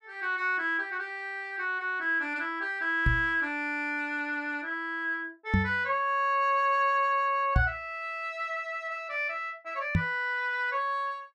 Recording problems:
microphone bump; 4 times, first at 3 s; peak +7 dB vs average level

